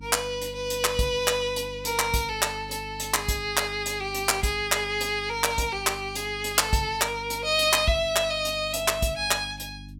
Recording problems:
electrical hum; 50 Hz, harmonics up to 300 Hz, SNR 18 dB

